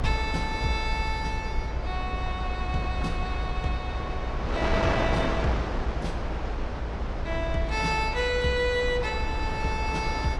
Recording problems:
codec artefacts; AAC, log-spectral distance 2 dB
rumble; below 66 Hz, SNR 5 dB
wind noise; below 1.2 kHz, SNR 4 dB

